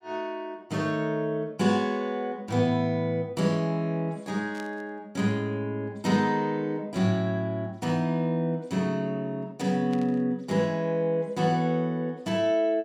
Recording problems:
static burst; at 4.5 s and at 10 s; peak -13 dB vs average level

